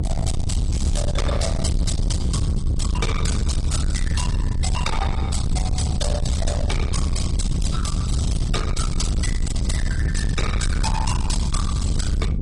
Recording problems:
codec artefacts; AAC, log-spectral distance 3 dB
distortion; soft clipping, signal-to-distortion ratio 7 dB
rumble; below 140 Hz, SNR -3 dB

